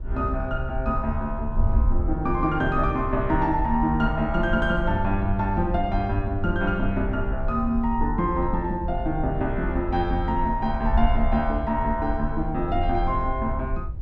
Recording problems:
wind on the microphone; below 62 Hz, SNR 5 dB

